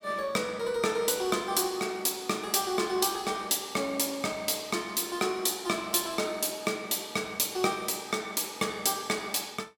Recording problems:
none

